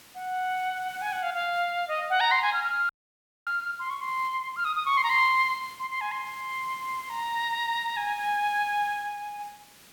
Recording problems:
background hiss; slope 0 dB per octave, SNR 22 dB
audio freezing; at 3 s for 0.5 s

